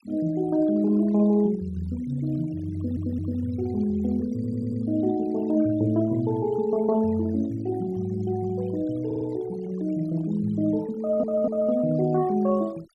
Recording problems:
noise reduction artefacts; signal-to-artefact ratio 22 dB
stutter; 4 times, first at 3 s

